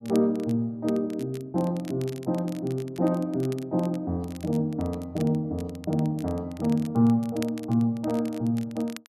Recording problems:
crackle; vinyl, SNR 22 dB

